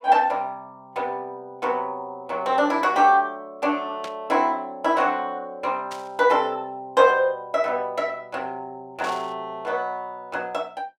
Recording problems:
static burst; at 4 s, at 6 s and at 9 s; peak -9 dB vs average level

